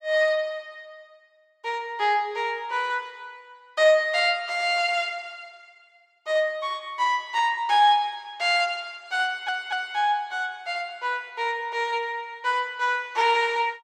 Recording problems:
audio stuttering; at 9 s

